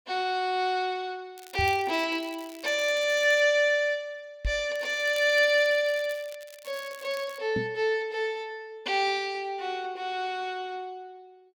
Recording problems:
crackling; from 1.5 to 3.5 s and from 5 to 7.5 s; loose cable, SNR 22 dB
knock on the microphone; at 1.5 s, at 4.5 s and at 7.5 s; peak -1 dB vs average level

